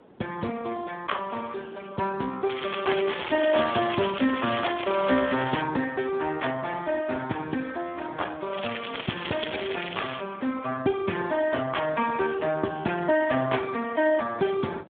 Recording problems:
phone line; 170 Hz to 3.5 kHz, Speex
wind on the microphone; below 670 Hz, SNR 21 dB
crackle; from 2.5 to 5.5 s and from 8.5 to 10 s; loose cable, SNR 8 dB

